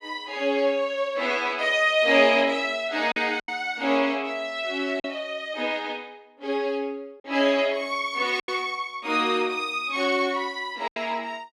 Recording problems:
lost packets; 3% of the sound replaced, filled with silence

